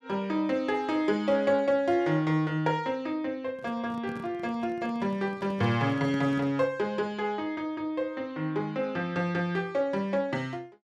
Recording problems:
handling noise; from 3.5 to 6.5 s; peak -6 dB vs average level

